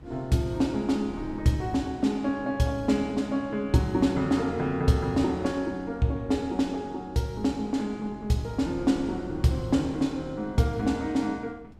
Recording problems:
wind on the microphone; below 240 Hz, SNR 20 dB

